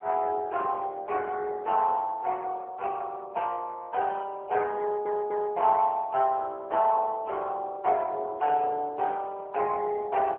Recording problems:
telephone audio; 340 Hz to 3.1 kHz, AMR-NB
stutter; at 5 s

